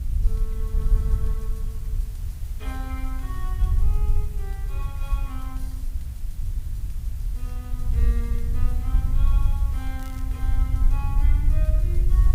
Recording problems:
background hiss; slope -2 dB per octave, SNR 9 dB
wind on the microphone; below 62 Hz, SNR -14 dB
crackling; at 10 s; loose cable, SNR 12 dB

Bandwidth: 15.5 kHz